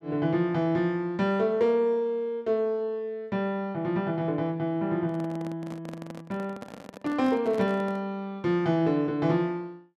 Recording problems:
microphone handling noise; from 5 to 8 s; peak -9 dB vs average level

